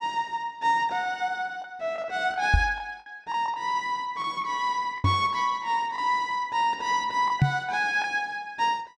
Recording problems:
lost packets; 4% of the sound replaced, filled with the last packet
microphone bump; at 2.5 s, at 5 s and at 7.5 s; peak +9 dB vs average level

